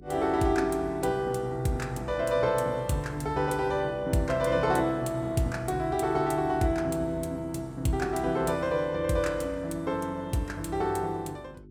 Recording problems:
electrical hum; 50 Hz, harmonics up to 400 Hz, SNR 20 dB

